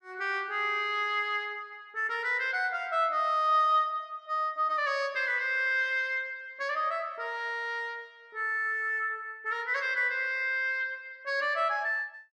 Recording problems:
none

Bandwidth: 12.5 kHz